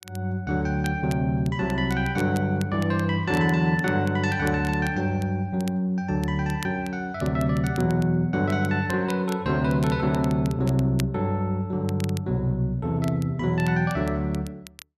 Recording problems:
crackling; vinyl, SNR 21 dB

